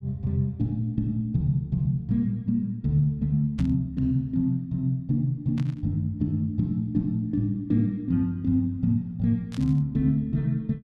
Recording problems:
burst of static; at 3.5 s, at 5.5 s and at 9.5 s; peak -13 dB vs average level

